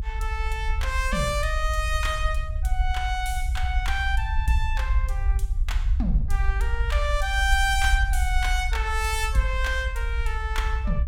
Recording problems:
low-frequency rumble; below 62 Hz, SNR 0 dB

